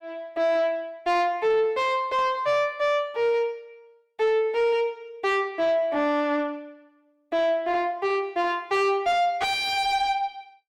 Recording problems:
distortion; soft clipping, signal-to-distortion ratio 10 dB

